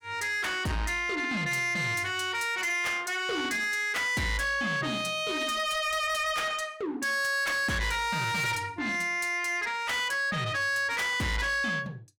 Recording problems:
distortion; soft clipping, signal-to-distortion ratio 8 dB

